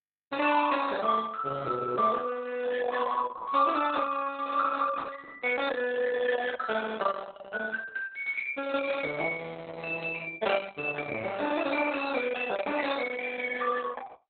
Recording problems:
lossy compression; Opus, log-spectral distance 5 dB, nothing above 3.9 kHz

